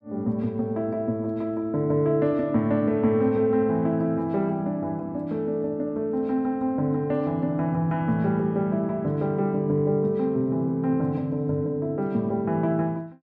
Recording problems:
none

